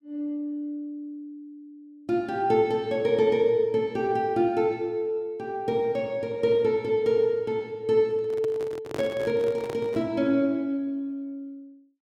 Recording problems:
microphone handling noise; from 8 to 10 s; peak -4 dB vs average level

